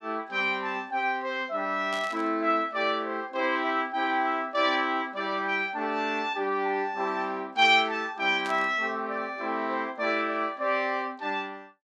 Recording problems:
static burst; at 2 s and at 8.5 s; peak -9 dB vs average level

